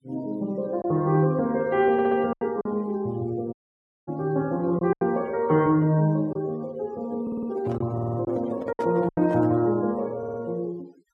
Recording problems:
noise reduction artefacts; signal-to-artefact ratio 25 dB
packet loss; 4% of the sound replaced, filled with silence
stutter; 4 times, first at 2 s
dropout; at 3.5 s for 0.5 s
microphone handling noise; from 7 to 9.5 s; peak -7 dB vs average level

